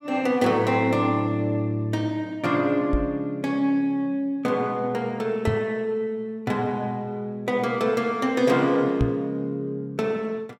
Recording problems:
microphone thump; at 3 s, at 5.5 s and at 9 s; peak +4 dB vs average level

